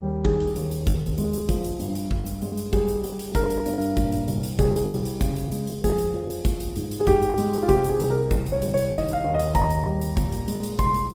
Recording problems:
lossy compression; Opus, log-spectral distance 4 dB
packet loss; 8% of the sound replaced, filled with the last packet

